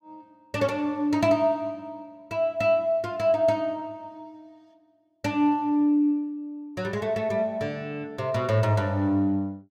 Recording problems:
none

